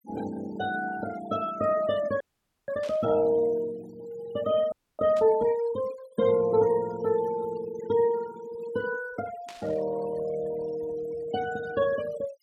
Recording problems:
denoising artefacts; signal-to-artefact ratio 16 dB
frozen audio; at 2 s and at 4.5 s
static burst; at 3 s, at 5 s and at 9.5 s; peak -12 dB vs average level

